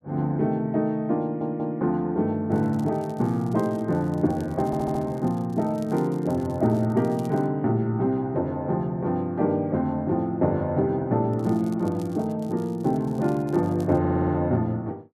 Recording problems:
stutter; at 1 s, at 4.5 s and at 14 s
crackling; from 2.5 to 7.5 s and from 11 to 14 s; loose cable, SNR 28 dB

